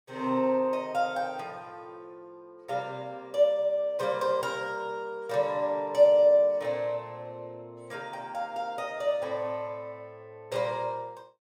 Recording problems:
none

